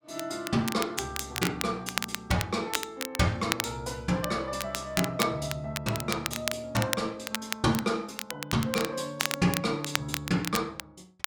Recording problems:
crackling; vinyl, SNR 4 dB

